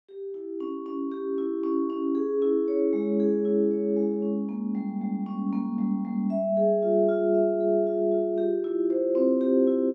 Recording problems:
none

